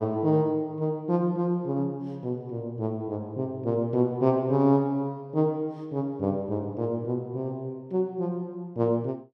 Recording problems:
none

